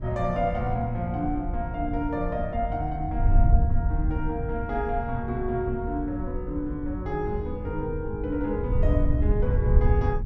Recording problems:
wind noise; below 86 Hz, SNR 0 dB

